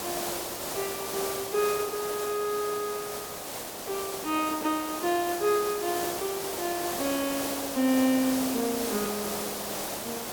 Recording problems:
hiss; SNR 3 dB
hard cut with a click; at 9 s

